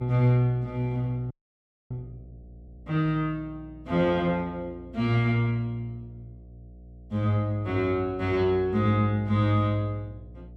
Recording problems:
hum; 60 Hz, harmonics up to 660 Hz, SNR 21 dB
frozen audio; at 1.5 s for 0.5 s

